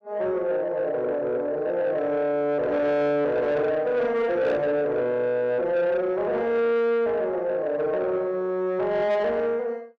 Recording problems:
distorted audio; soft clipping, signal-to-distortion ratio 12 dB

